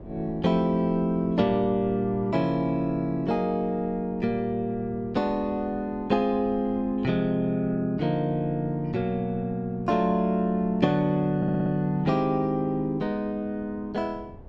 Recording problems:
wind on the microphone; below 330 Hz, SNR 20 dB
audio stuttering; at 11 s

